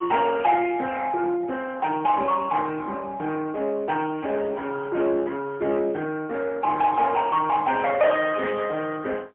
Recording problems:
telephone audio; 220 Hz to 3.1 kHz, AMR-NB, then MP3
distorted audio; soft clipping, signal-to-distortion ratio 11 dB

